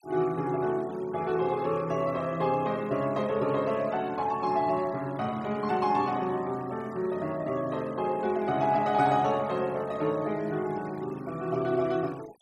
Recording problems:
denoising artefacts; signal-to-artefact ratio 23 dB

